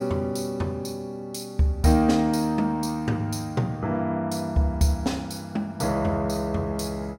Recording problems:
none

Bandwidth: 16.5 kHz